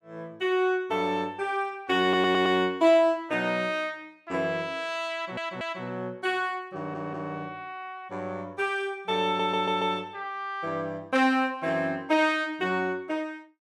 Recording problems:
stutter; 4 times, first at 2 s

